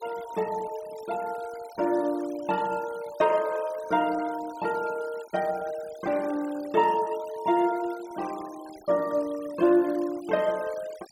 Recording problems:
noise reduction artefacts; signal-to-artefact ratio 20 dB

